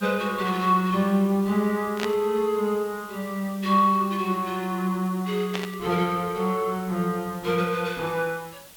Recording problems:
background hiss; slope -1 dB per octave, SNR 21 dB
static burst; at 2 s and at 5.5 s; peak -1 dB vs average level

